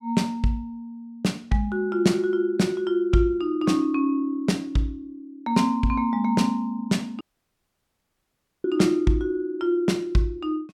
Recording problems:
audio cutting out; at 7 s for 1.5 s

